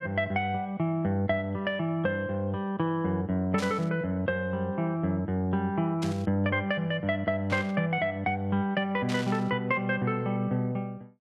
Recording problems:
burst of static; 4 times, first at 3.5 s; peak -5 dB vs average level

